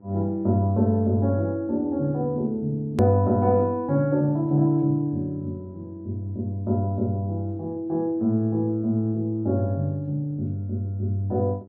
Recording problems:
hum; 50 Hz, harmonics up to 900 Hz, SNR 26 dB
edit click; at 3 s

